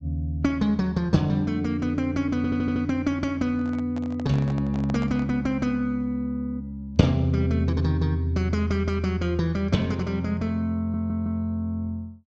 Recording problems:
treble cut off; nothing above 8 kHz
stutter; at 2.5 s and at 11 s
microphone handling noise; from 3.5 to 5.5 s; peak -7 dB vs average level

